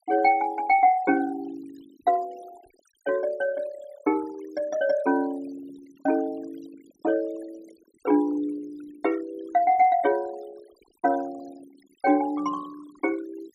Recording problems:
noise reduction artefacts; signal-to-artefact ratio 23 dB

